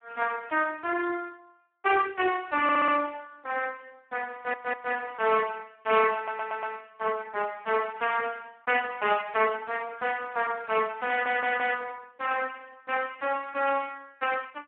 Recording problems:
phone line; 280 Hz to 2.9 kHz, Speex
audio stuttering; 4 times, first at 2.5 s

